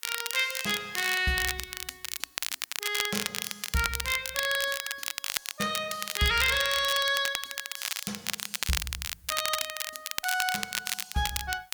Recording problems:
hiss; SNR 29 dB
crackling; vinyl, SNR 3 dB

